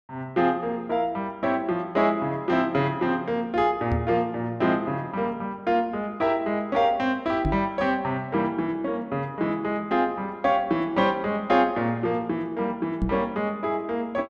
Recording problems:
knock on the microphone; at 4 s, at 7.5 s and at 13 s; peak +3 dB vs average level

